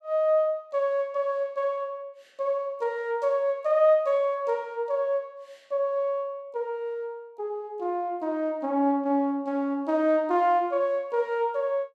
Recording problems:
none

